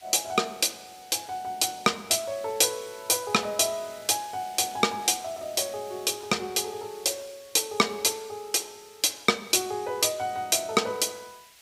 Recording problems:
background hiss; SNR 23 dB

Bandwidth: 15.5 kHz